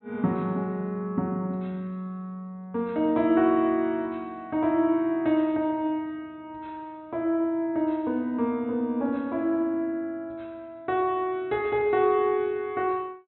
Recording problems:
treble cut off; nothing above 4.1 kHz

